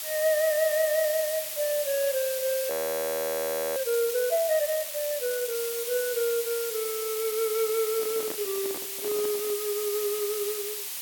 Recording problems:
background hiss; slope +3 dB per octave, SNR 4 dB
audio freezing; at 2.5 s for 1 s
microphone handling noise; from 8 to 9.5 s; peak -6 dB vs average level

